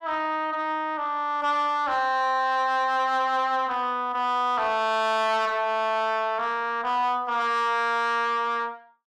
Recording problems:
distorted audio; soft clipping, signal-to-distortion ratio 10 dB

